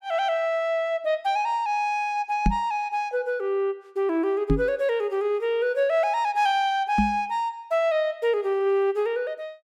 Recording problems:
microphone bump; at 2.5 s, at 4.5 s and at 7 s; peak +5 dB vs average level

